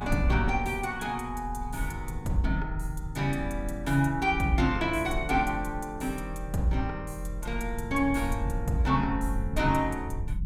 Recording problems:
low-frequency rumble; below 78 Hz, strongest tone 42 Hz, SNR 7 dB

